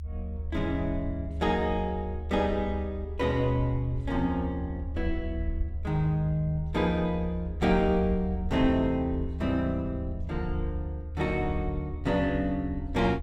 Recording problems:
rumble; below 76 Hz, strongest tone 76 Hz, SNR 6 dB

